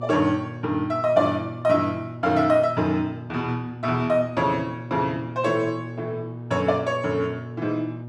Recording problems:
hum; 60 Hz, harmonics up to 960 Hz, SNR 12 dB

